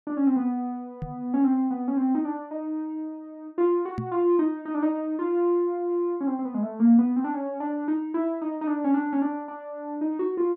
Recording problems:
knock on the microphone; at 1 s and at 4 s; peak -1 dB vs average level

